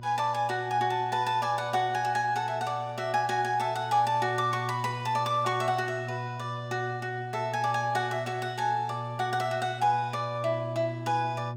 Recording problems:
mains hum; 60 Hz, harmonics up to 600 Hz, SNR 11 dB

